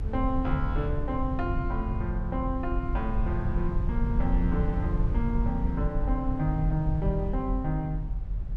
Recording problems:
low-frequency rumble; below 84 Hz, SNR 0 dB

